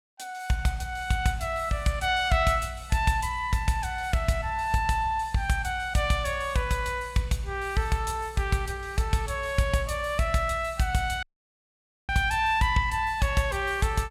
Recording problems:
dropout; at 11 s for 1 s

